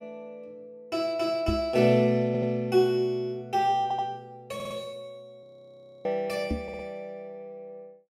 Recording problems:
microphone thump; at 1.5 s and at 6.5 s; peak +1 dB vs average level
audio stuttering; 4 times, first at 2.5 s
audio freezing; at 5.5 s for 0.5 s

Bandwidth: 15.5 kHz